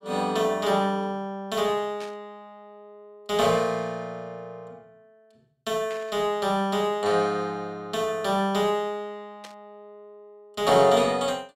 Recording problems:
static burst; at 2 s, at 6 s and at 9.5 s; peak -13 dB vs average level

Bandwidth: 16 kHz